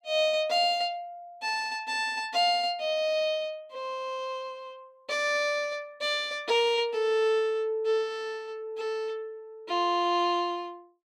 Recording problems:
none

